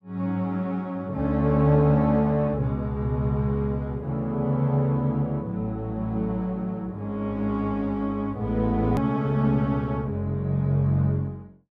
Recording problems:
hard cut with a click; at 9 s

